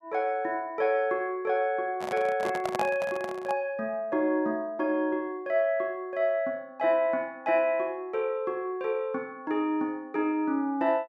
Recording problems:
microphone handling noise; from 2 to 3.5 s; peak +1 dB vs average level

